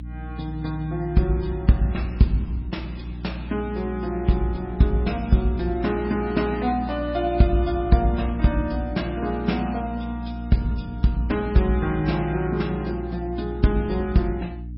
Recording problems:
codec artefacts; MP3, log-spectral distance 2 dB, nothing above 5.2 kHz
electrical hum; 60 Hz, harmonics up to 300 Hz, SNR 9 dB

